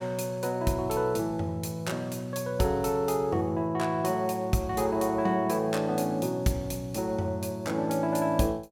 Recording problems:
none

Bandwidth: 17.5 kHz